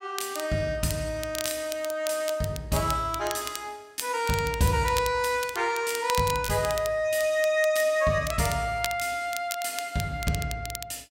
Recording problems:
crackling; vinyl, SNR 11 dB

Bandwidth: 16 kHz